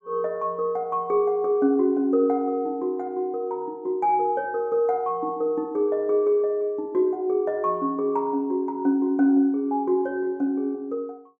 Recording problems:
none

